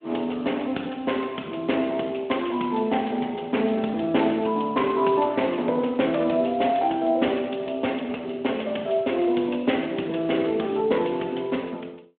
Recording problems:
telephone audio; 240 Hz to 3.4 kHz, Speex

